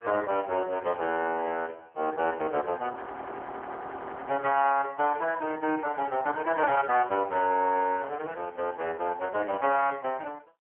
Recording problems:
phone line; 300 Hz to 3 kHz, AMR-NB
frozen audio; at 3 s for 1.5 s

